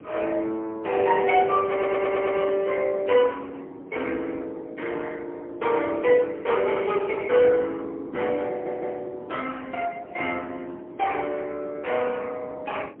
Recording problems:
phone line; 280 Hz to 3.3 kHz, AMR-NB, then MP3
wind noise; below 440 Hz, SNR 19 dB
audio stuttering; at 1.5 s and at 8.5 s

